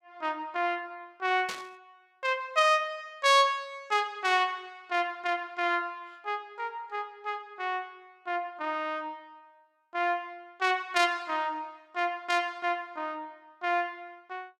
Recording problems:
static burst; at 1.5 s; peak -4 dB vs average level

